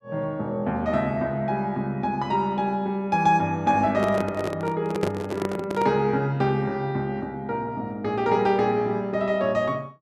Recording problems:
handling noise; from 4 to 6 s; peak +3 dB vs average level

